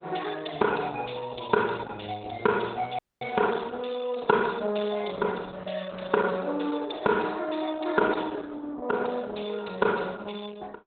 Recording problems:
codec artefacts; Opus, log-spectral distance 9 dB, nothing above 3.8 kHz
audio cutting out; at 3 s

